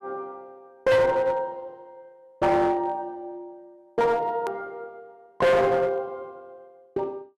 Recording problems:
distortion; hard clipping, uneven, signal-to-distortion ratio 6 dB
hard cut with a click; at 4.5 s

